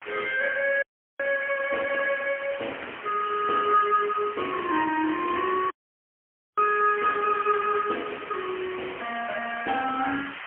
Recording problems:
telephone audio; 260 Hz to 3.1 kHz, AMR-NB, then MP3
hiss; SNR 13 dB
dropout; at 1 s and at 5.5 s for 1 s

